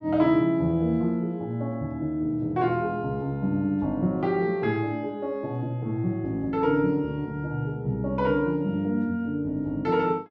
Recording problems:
none

